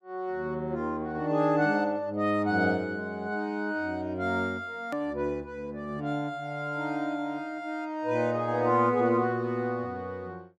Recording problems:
click at an edit; at 5 s

